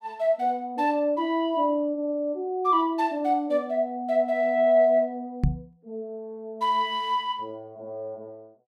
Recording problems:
microphone thump; at 5.5 s; peak +5 dB vs average level

